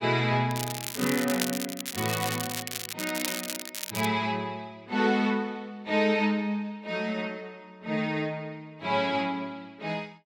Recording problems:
crackle; until 4 s; loose cable, SNR 4 dB

